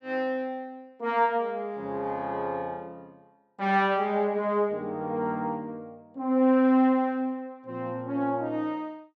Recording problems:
none

